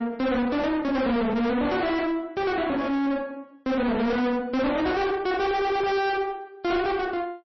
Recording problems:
lossy codec; MP3, log-spectral distance 2 dB, nothing above 5.8 kHz
distorted audio; soft clipping, signal-to-distortion ratio 6 dB

